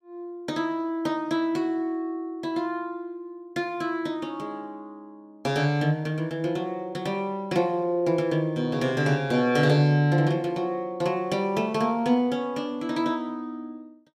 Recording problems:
none

